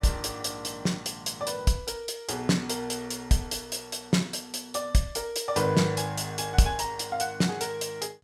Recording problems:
none

